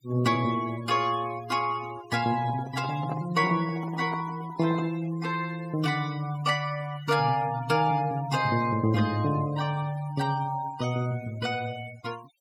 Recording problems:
noise reduction artefacts; signal-to-artefact ratio 16 dB
handling noise; from 2.5 to 5 s; peak -5 dB vs average level

